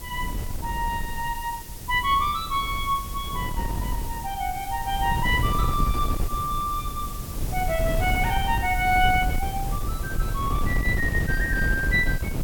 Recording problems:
background hiss; slope +2 dB per octave, SNR 13 dB
wind on the microphone; below 120 Hz, SNR 4 dB

